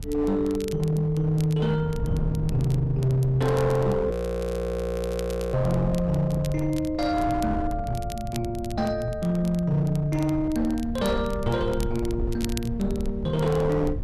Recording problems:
distortion; hard clipping, uneven, signal-to-distortion ratio 11 dB
rumble; below 94 Hz, SNR 12 dB
wind on the microphone; below 140 Hz, SNR 13 dB
crackling; vinyl, SNR 20 dB
audio freezing; at 4 s for 1.5 s

